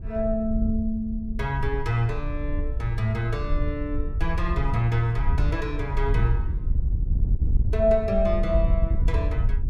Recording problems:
wind noise; below 72 Hz, SNR 1 dB

